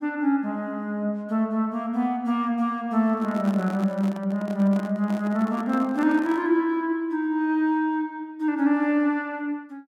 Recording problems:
microphone handling noise; from 3 to 6.5 s; peak -9 dB vs average level

